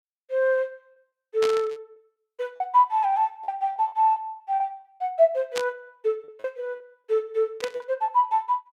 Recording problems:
lost packets; 9% of the sound replaced, filled with repeated pitch periods
static burst; at 1.5 s, at 5.5 s and at 7.5 s; peak -1 dB vs average level

